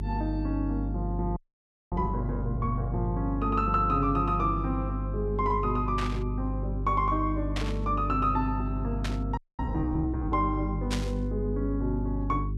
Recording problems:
mains hum; 50 Hz, harmonics up to 400 Hz, SNR 3 dB
audio freezing; at 1.5 s for 0.5 s and at 9.5 s
static burst; 4 times, first at 6 s; peak +1 dB vs average level

